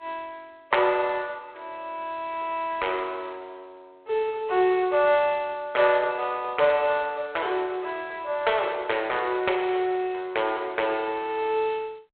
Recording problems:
telephone audio; 340 Hz to 3.5 kHz, G.726

